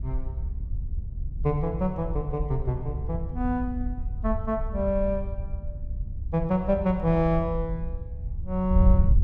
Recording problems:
wind noise; below 76 Hz, SNR 4 dB

